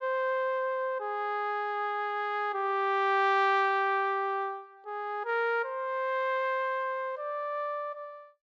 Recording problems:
treble missing; nothing above 7.7 kHz

